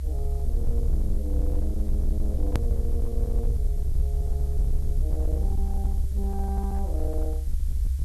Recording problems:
distortion; hard clipping, uneven, signal-to-distortion ratio 11 dB
background hiss; slope +1 dB per octave, SNR 16 dB
rumble; below 66 Hz, SNR -9 dB
edit click; at 2.5 s

